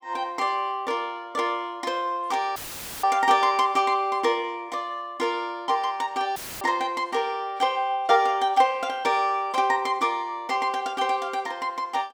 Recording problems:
audio cutting out; at 2.5 s and at 6.5 s; filled with static

